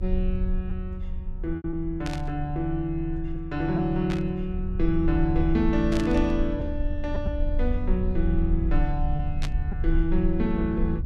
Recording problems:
rumble; below 72 Hz, strongest tone 26 Hz, SNR 3 dB
lost packets; 2% of the sound replaced, filled with repeated pitch periods
static burst; 4 times, first at 2 s; peak -3 dB vs average level

